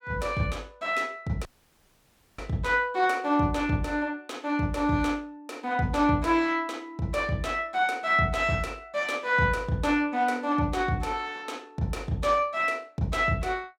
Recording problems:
dropout; at 1.5 s for 1 s

